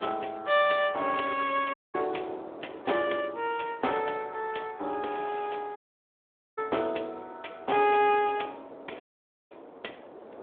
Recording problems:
telephone audio; 320 Hz to 3.5 kHz, Speex
wind noise; below 770 Hz, SNR 21 dB
dropout; at 1.5 s, at 6 s for 1 s and at 9 s for 0.5 s

